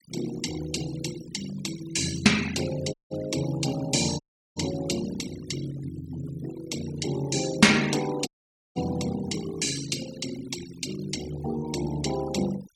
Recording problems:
noise reduction artefacts; signal-to-artefact ratio 11 dB
audio cutting out; at 3 s, at 4 s and at 8.5 s

